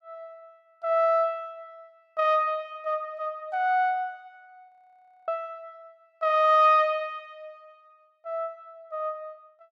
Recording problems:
frozen audio; at 4.5 s for 0.5 s

